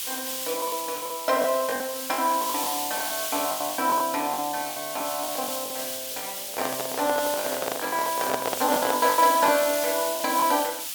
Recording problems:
background hiss; SNR 4 dB
packet loss; 14% of the sound replaced, filled with the last packet
microphone handling noise; from 6.5 to 9 s; peak +3 dB vs average level

